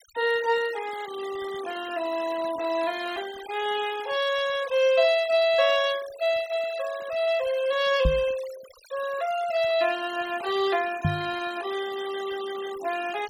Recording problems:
denoising artefacts; signal-to-artefact ratio 16 dB
microphone bump; at 8 s and at 11 s; peak +5 dB vs average level

